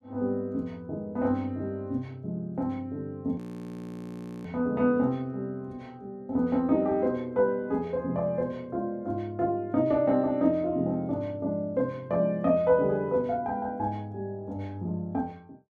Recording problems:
audio freezing; at 3.5 s for 1 s

